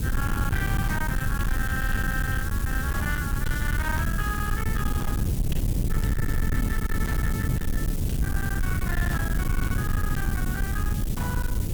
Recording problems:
distortion; hard clipping, uneven, signal-to-distortion ratio 7 dB
background hiss; slope +2 dB per octave, SNR 5 dB
rumble; below 140 Hz, SNR -5 dB

